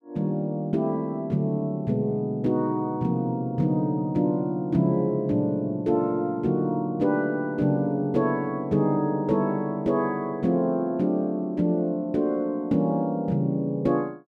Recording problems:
none

